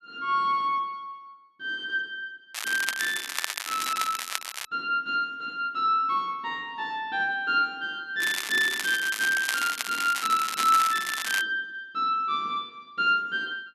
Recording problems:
crackling; from 2.5 to 4.5 s and from 8 to 11 s; loose cable, SNR 5 dB

